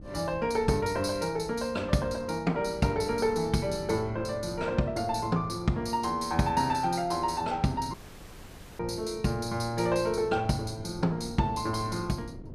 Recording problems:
wind noise; below 290 Hz, SNR 17 dB
dropout; at 8 s for 1 s

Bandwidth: 14.5 kHz